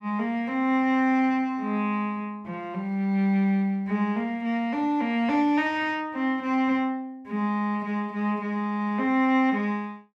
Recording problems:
none

